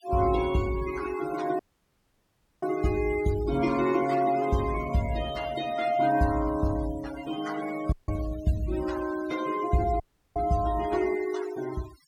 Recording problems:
noise reduction artefacts; signal-to-artefact ratio 15 dB
dropout; at 1.5 s for 1 s, at 8 s and at 10 s

